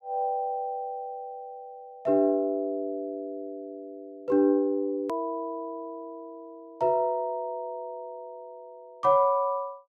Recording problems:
edit click; at 5 s

